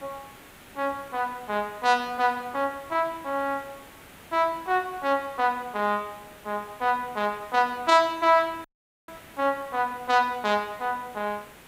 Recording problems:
hiss; SNR 21 dB
audio cutting out; at 8.5 s

